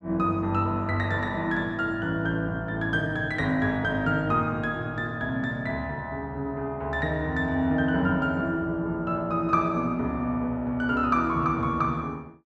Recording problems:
none

